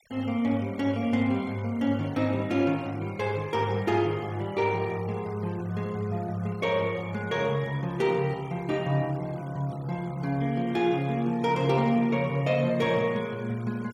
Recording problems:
denoising artefacts; signal-to-artefact ratio 23 dB

